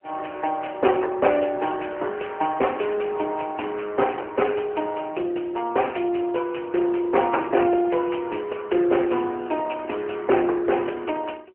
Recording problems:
phone line; 280 Hz to 3.1 kHz, AMR-NB

